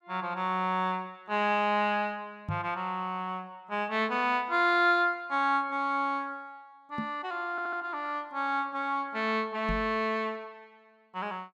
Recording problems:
microphone thump; at 2.5 s, at 7 s and at 9.5 s; peak -1 dB vs average level
stutter; at 7.5 s

